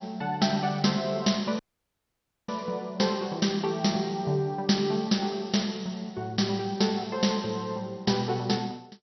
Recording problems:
codec artefacts; MP2, log-spectral distance 6 dB, nothing above 5.8 kHz
dropout; at 1.5 s for 1 s

